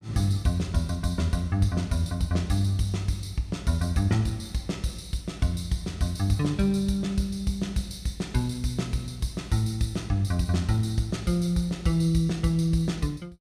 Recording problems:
none

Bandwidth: 15 kHz